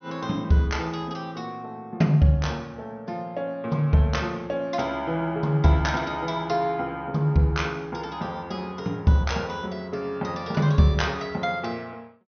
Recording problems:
treble missing; nothing above 6.3 kHz

